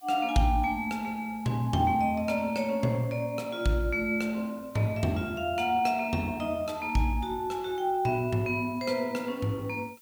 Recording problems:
background hiss; SNR 26 dB

